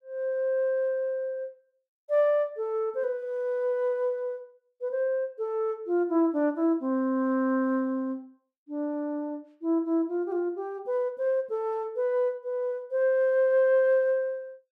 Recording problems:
none

